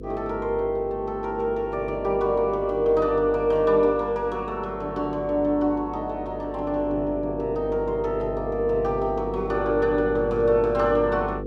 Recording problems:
hum; 50 Hz, harmonics up to 500 Hz, SNR 11 dB

